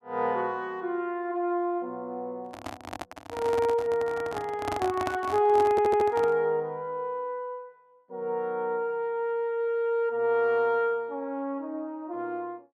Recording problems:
microphone handling noise; from 2.5 to 6.5 s; peak 0 dB vs average level
audio stuttering; at 5.5 s

